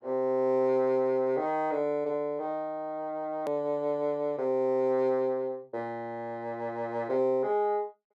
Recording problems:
click at an edit; at 3.5 s

